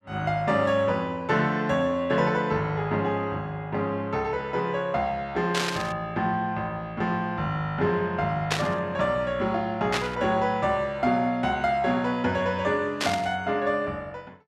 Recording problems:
burst of static; 4 times, first at 5.5 s; peak +4 dB vs average level

